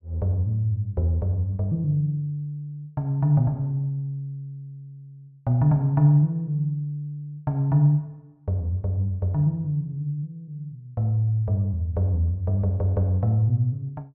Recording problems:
none

